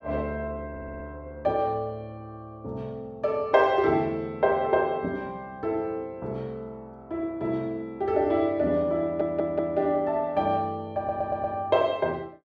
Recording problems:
audio stuttering; at 0.5 s, at 9 s and at 11 s

